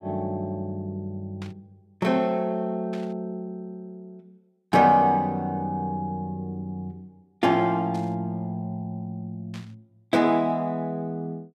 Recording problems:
burst of static; 4 times, first at 1.5 s; peak -13 dB vs average level

